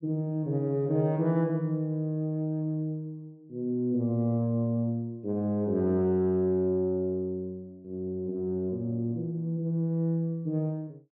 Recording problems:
none

